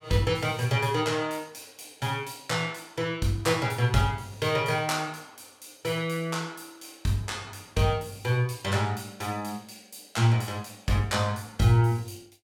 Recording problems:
none

